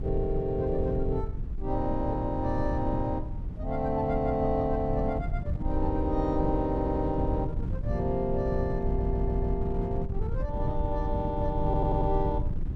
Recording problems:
wind noise; below 110 Hz, SNR 3 dB
audio stuttering; at 6.5 s, at 9 s and at 12 s

